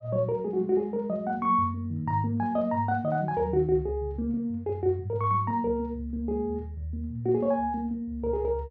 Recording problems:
none

